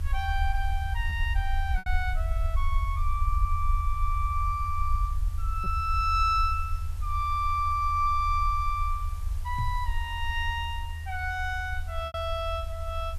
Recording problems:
hiss; slope -1 dB per octave, SNR 23 dB
rumble; below 78 Hz, SNR 2 dB
packet loss; 1.6% of the sound replaced, filled with repeated pitch periods
microphone bump; at 9.5 s; peak +1 dB vs average level

